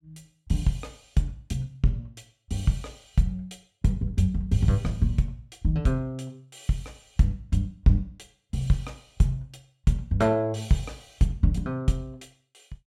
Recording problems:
none

